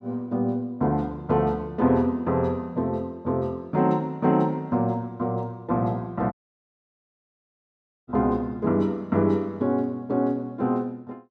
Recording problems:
audio cutting out; at 6.5 s for 2 s

